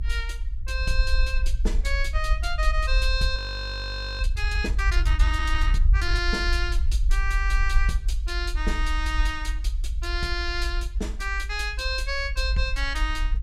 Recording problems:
low-frequency rumble; below 52 Hz, SNR -1 dB
frozen audio; at 3.5 s for 1 s

